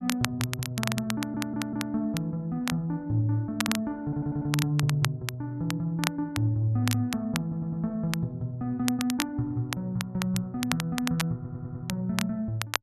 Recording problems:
crackle; vinyl, SNR 6 dB
stutter; 4 times, first at 1 s

